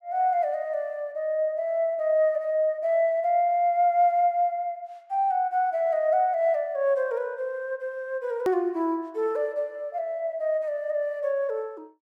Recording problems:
click at an edit; at 8.5 s

